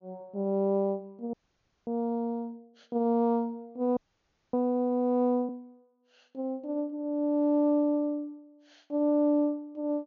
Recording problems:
treble cut off; nothing above 7 kHz
frozen audio; at 1.5 s for 0.5 s and at 4 s for 0.5 s

